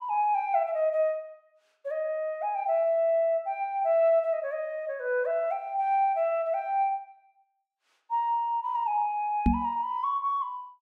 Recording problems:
microphone bump; at 9.5 s; peak +7 dB vs average level

